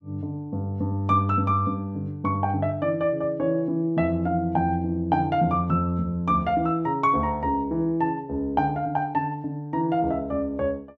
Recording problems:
none

